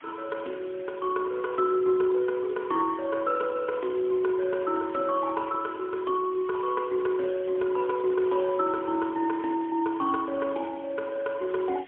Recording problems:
telephone audio; 240 Hz to 3.7 kHz, AMR-NB, then MP3
hiss; SNR 23 dB

